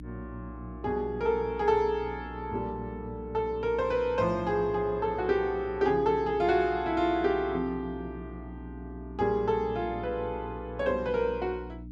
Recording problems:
electrical hum; 60 Hz, harmonics up to 300 Hz, SNR 14 dB

